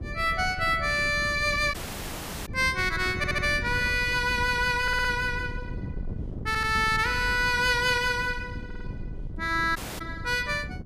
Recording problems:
wind on the microphone; below 160 Hz, SNR 12 dB
audio cutting out; at 1.5 s for 0.5 s and at 10 s
audio stuttering; 4 times, first at 3 s

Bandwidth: 15 kHz